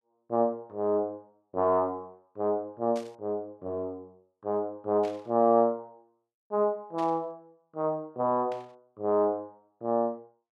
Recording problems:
static burst; 4 times, first at 3 s; peak -13 dB vs average level

